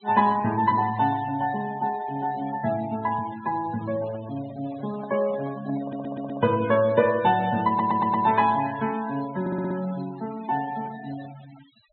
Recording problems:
low-pass filter; nothing above 4.1 kHz
denoising artefacts; signal-to-artefact ratio 18 dB
handling noise; from 4 to 6.5 s; peak -13 dB vs average level
stutter; at 6 s, at 7.5 s and at 9.5 s

